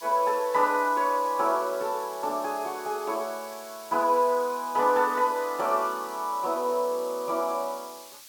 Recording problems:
hiss; slope +3 dB per octave, SNR 18 dB

